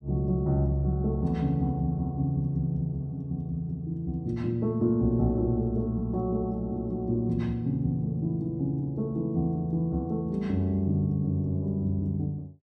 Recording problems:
none

